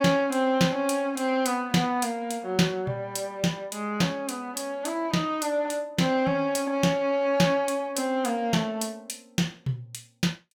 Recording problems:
none

